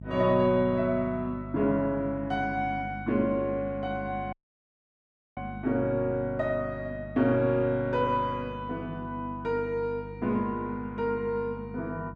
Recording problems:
electrical hum; 50 Hz, harmonics up to 350 Hz, SNR 13 dB
audio cutting out; at 4.5 s for 1 s

